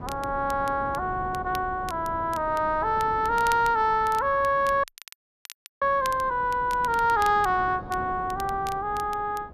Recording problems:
wind noise; below 450 Hz, SNR 17 dB
crackle; vinyl, SNR 21 dB
audio freezing; at 5 s for 1 s

